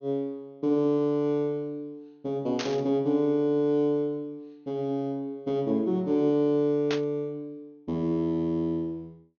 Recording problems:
treble cut off; nothing above 6.6 kHz
static burst; at 2.5 s and at 7 s; peak -2 dB vs average level

